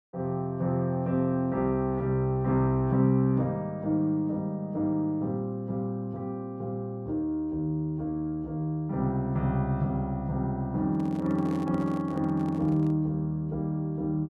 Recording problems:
microphone handling noise; from 11 to 13 s; peak -10 dB vs average level

